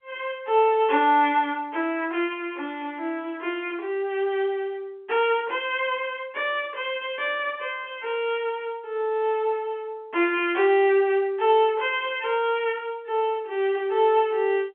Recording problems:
phone line; 240 Hz to 3.4 kHz, G.711

